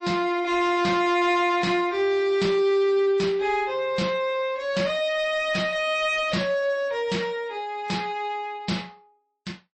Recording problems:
codec artefacts; MP3, log-spectral distance 2 dB, nothing above 8.2 kHz
distorted audio; soft clipping, signal-to-distortion ratio 11 dB

